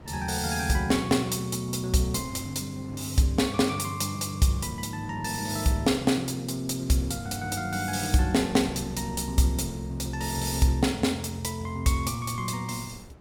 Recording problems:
wind noise; below 450 Hz, SNR 20 dB

